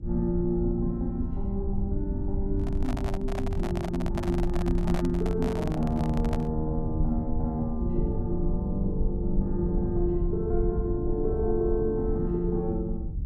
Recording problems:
rumble; below 84 Hz, SNR 3 dB
handling noise; from 2.5 to 6.5 s; peak -2 dB vs average level

